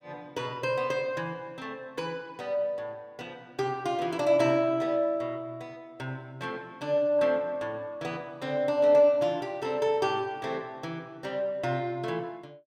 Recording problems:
none

